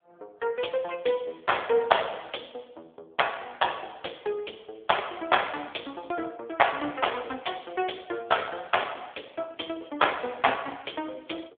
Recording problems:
telephone audio; 280 Hz to 3.6 kHz, AMR-NB

